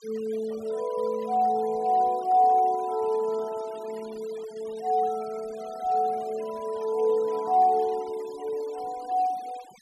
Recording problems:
denoising artefacts; signal-to-artefact ratio 22 dB

